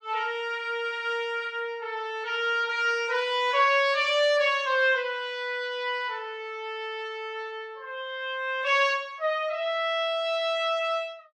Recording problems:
none

